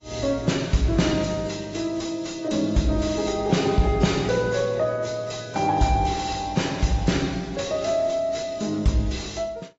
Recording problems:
lossy compression; AAC, log-spectral distance 5 dB, nothing above 7.3 kHz
distorted audio; soft clipping, signal-to-distortion ratio 11 dB

